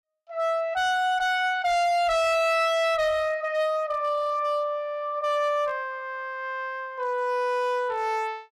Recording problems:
distortion; hard clipping, signal-to-distortion ratio 8 dB

